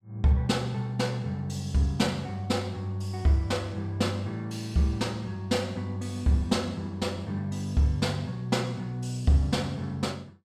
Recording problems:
none

